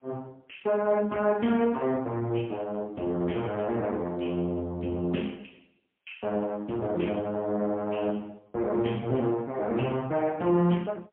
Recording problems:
telephone audio; 170 Hz to 3.2 kHz, AMR-NB, then MP3

